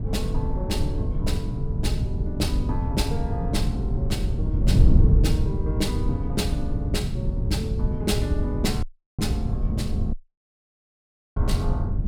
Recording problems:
wind noise; below 120 Hz, SNR -5 dB
dropout; at 9 s and at 10 s for 1 s

